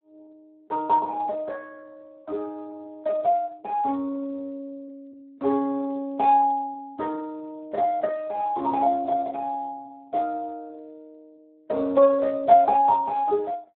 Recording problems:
telephone audio; 240 Hz to 2.1 kHz, Speex

